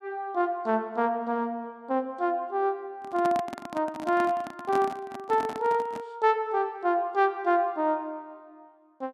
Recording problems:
microphone handling noise; from 3 to 6 s; peak -3 dB vs average level

